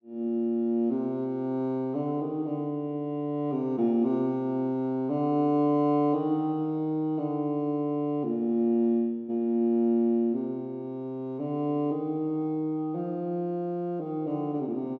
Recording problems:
none

